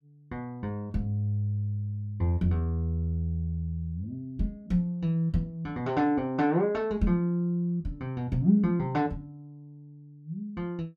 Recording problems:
none

